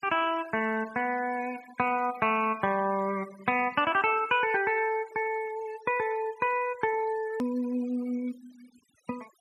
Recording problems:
noise reduction artefacts; signal-to-artefact ratio 22 dB
click at an edit; at 7.5 s

